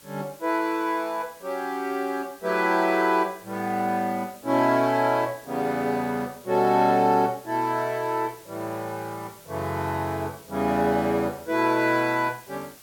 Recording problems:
hiss; slope -1 dB per octave, SNR 23 dB

